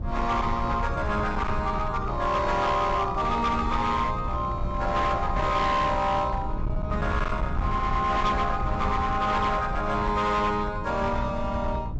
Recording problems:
treble cut off; nothing above 8 kHz
distortion; hard clipping, signal-to-distortion ratio 10 dB
hum; 60 Hz, harmonics up to 420 Hz, SNR 13 dB
rumble; below 120 Hz, SNR 7 dB

